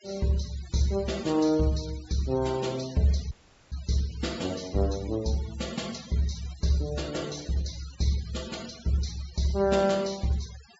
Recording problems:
treble missing; nothing above 8 kHz
noise reduction artefacts; signal-to-artefact ratio 17 dB
audio cutting out; at 3.5 s

